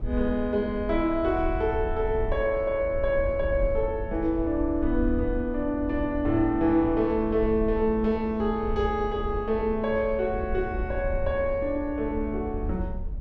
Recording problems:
rumble; below 74 Hz, SNR 9 dB

